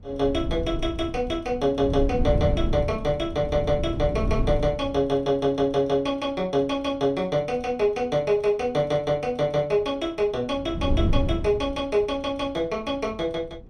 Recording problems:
wind on the microphone; below 140 Hz, SNR 5 dB

